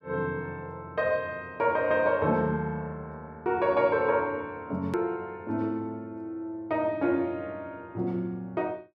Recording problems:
hard cut with a click; at 5 s

